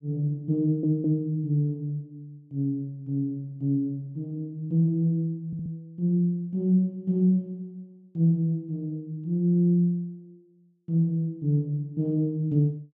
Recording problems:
stutter; at 0.5 s and at 5.5 s

